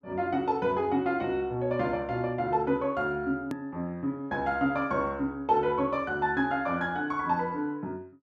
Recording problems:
click at an edit; at 3.5 s

